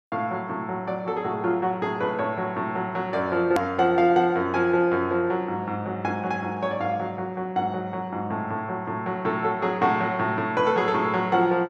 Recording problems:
hard cut with a click; at 3.5 s

